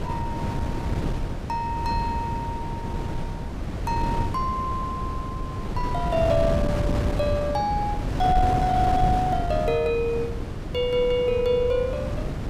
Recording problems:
wind noise; below 280 Hz, SNR 3 dB

